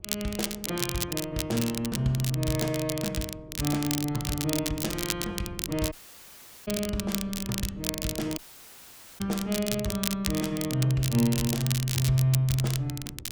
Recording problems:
wind noise; below 240 Hz, SNR 17 dB
crackle; vinyl, SNR 4 dB
dropout; at 6 s for 1 s and at 8.5 s for 1 s

